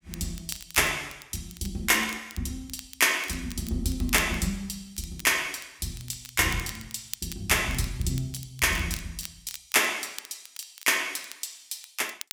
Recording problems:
crackling; vinyl, SNR 16 dB

